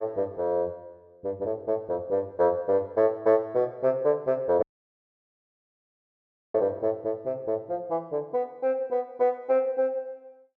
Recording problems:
dropout; at 4.5 s for 2 s

